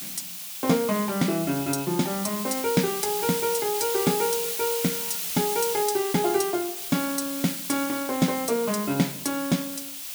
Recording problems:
background hiss; SNR 4 dB

